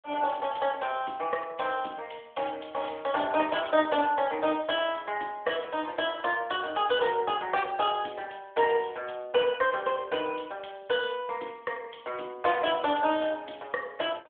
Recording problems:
phone line; 260 Hz to 3.5 kHz, AMR-NB

